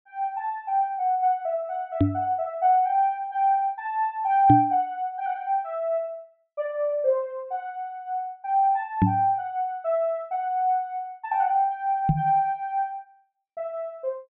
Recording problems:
treble missing; nothing above 4 kHz
microphone thump; 4 times, first at 2 s; peak +9 dB vs average level

